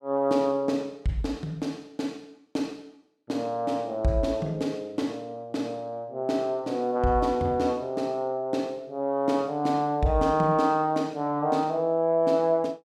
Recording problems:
none

